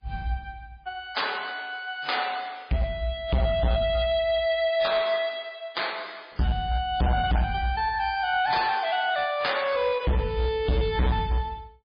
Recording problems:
lossy compression; MP3, log-spectral distance 4 dB, nothing above 4.6 kHz
distorted audio; hard clipping, signal-to-distortion ratio 6 dB

